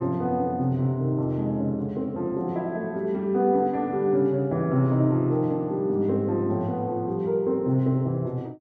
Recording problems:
none

